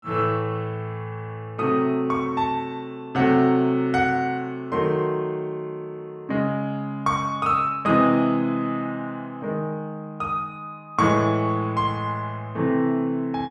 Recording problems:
none

